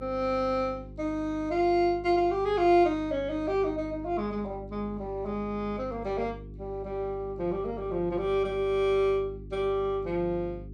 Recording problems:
mains hum; 50 Hz, harmonics up to 400 Hz, SNR 15 dB

